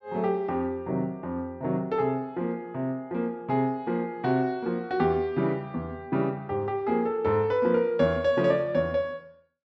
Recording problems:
none

